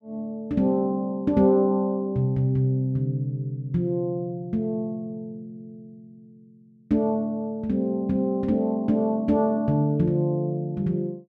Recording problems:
none

